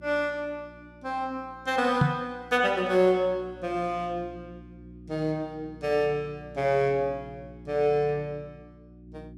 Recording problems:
mains hum; 60 Hz, harmonics up to 360 Hz, SNR 21 dB
microphone bump; at 2 s; peak +8 dB vs average level

